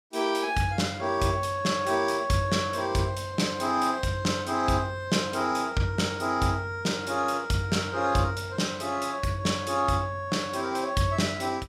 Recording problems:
none

